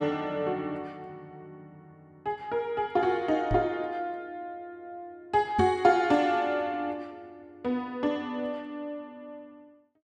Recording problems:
microphone bump; at 3.5 s and at 5.5 s; peak +3 dB vs average level

